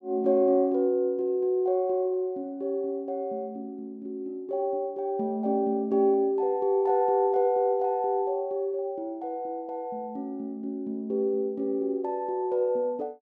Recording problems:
none

